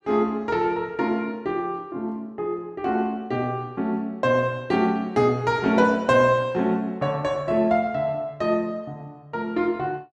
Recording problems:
none

